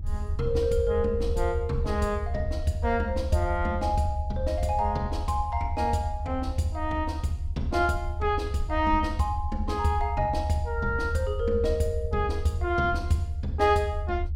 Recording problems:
low-frequency rumble; below 80 Hz, SNR 4 dB

